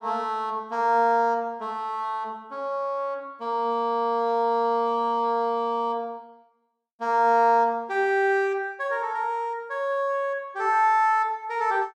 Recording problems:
none

